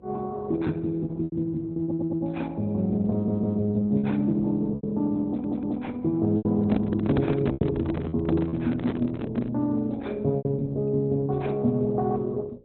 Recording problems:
lossy codec; Opus, log-spectral distance 2 dB, nothing above 4 kHz
electrical hum; 60 Hz, harmonics up to 540 Hz, SNR 28 dB
lost packets; 5% of the sound replaced, filled with repeated pitch periods
audio stuttering; at 2 s, at 3 s and at 5.5 s
handling noise; from 6.5 to 9.5 s; peak +2 dB vs average level

